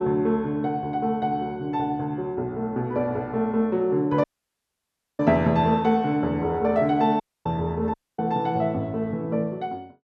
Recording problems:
dropout; at 4 s for 1 s, at 7 s and at 8 s

